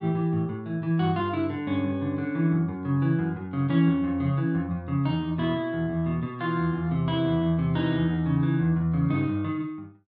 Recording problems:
treble cut off; nothing above 5.5 kHz

